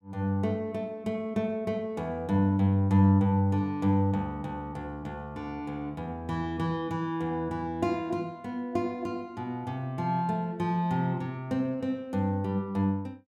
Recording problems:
none

